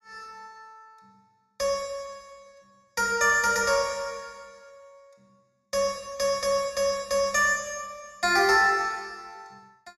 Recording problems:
none

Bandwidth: 14.5 kHz